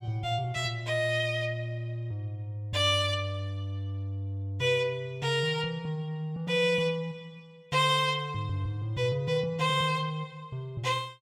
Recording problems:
none

